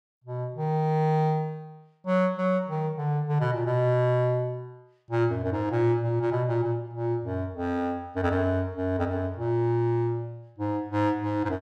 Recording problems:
none

